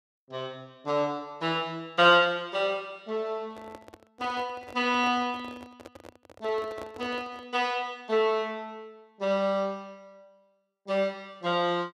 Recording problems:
microphone handling noise; from 3.5 to 7.5 s; peak -10 dB vs average level

